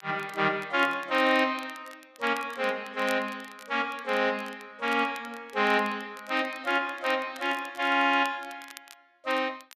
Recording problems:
crackling; vinyl, SNR 22 dB

